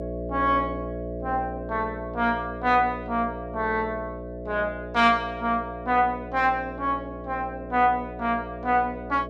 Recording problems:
hum; 60 Hz, harmonics up to 660 Hz, SNR 10 dB

